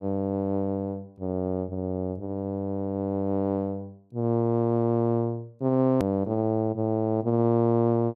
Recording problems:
click at an edit; at 6 s

